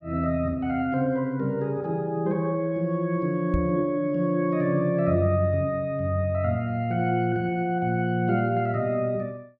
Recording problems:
microphone bump; at 3.5 s; peak +2 dB vs average level

